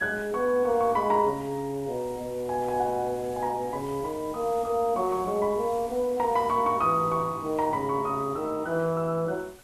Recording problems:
background hiss; slope -2 dB per octave, SNR 22 dB

